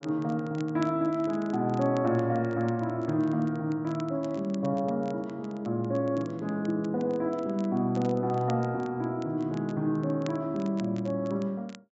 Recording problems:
treble cut off; nothing above 7.6 kHz
crackling; vinyl, SNR 25 dB

